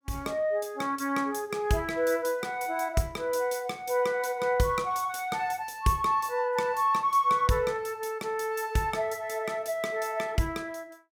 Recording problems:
none

